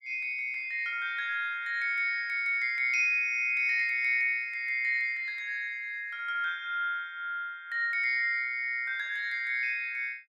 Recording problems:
none

